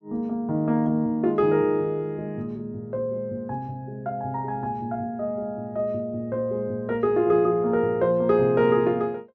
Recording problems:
none

